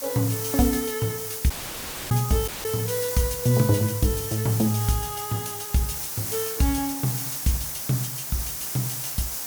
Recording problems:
background hiss; SNR 4 dB
audio cutting out; at 1.5 s for 0.5 s and at 2.5 s

